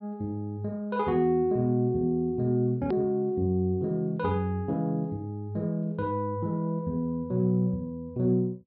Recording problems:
treble missing; nothing above 5.3 kHz
edit click; at 3 s

